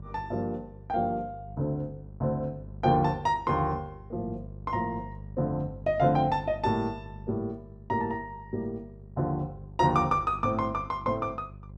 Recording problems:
hum; 50 Hz, harmonics up to 600 Hz, SNR 15 dB

